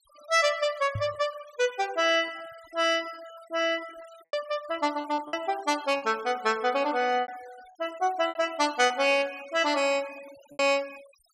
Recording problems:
noise reduction artefacts; signal-to-artefact ratio 22 dB
lost packets; 5% of the sound replaced, filled with repeated pitch periods
microphone bump; at 1 s; peak -3 dB vs average level

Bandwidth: 14.5 kHz